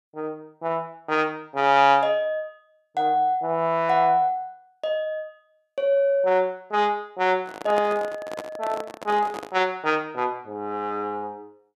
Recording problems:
microphone handling noise; from 7.5 to 9.5 s; peak -5 dB vs average level

